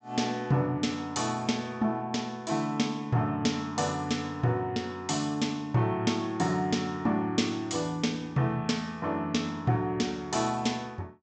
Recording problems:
treble cut off; nothing above 8 kHz

